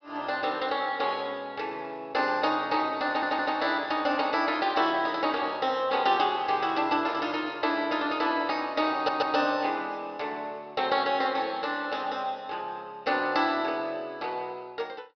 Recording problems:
low-pass filter; nothing above 5.5 kHz
stutter; at 3 s and at 9 s

